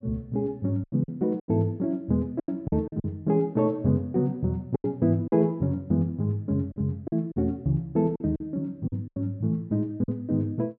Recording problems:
packet loss; 8% of the sound replaced, filled with silence

